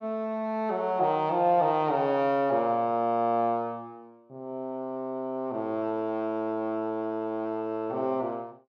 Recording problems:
none

